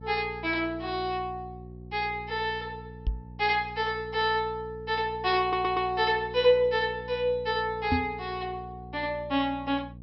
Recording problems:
treble cut off; nothing above 5.6 kHz
electrical hum; 60 Hz, harmonics up to 540 Hz, SNR 17 dB
knock on the microphone; at 3 s and at 8 s; peak +4 dB vs average level
stutter; at 5.5 s

